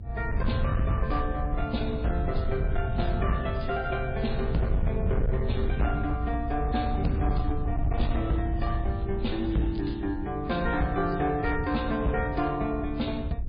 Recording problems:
lossy compression; MP3, log-spectral distance 2 dB, nothing above 4.2 kHz
distorted audio; hard clipping, signal-to-distortion ratio 11 dB
rumble; below 100 Hz, SNR 2 dB
crackle; from 3 to 5 s and from 8.5 to 10 s; loose cable, SNR 28 dB

